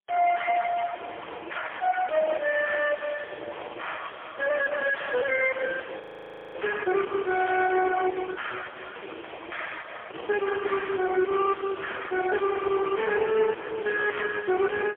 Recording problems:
telephone audio; 240 Hz to 3.3 kHz, AMR-NB, then MP3
distortion; soft clipping, signal-to-distortion ratio 5 dB
crackle; at 3 s; loose cable, SNR 27 dB
audio freezing; at 6 s for 0.5 s

